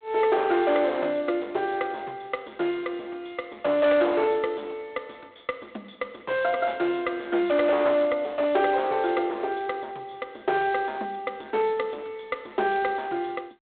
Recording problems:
telephone audio; 300 Hz to 3.7 kHz, G.726
distortion; hard clipping, signal-to-distortion ratio 12 dB

